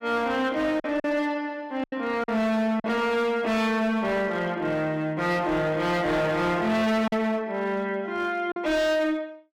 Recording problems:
distortion; hard clipping, signal-to-distortion ratio 8 dB
lost packets; 3% of the sound replaced, filled with silence

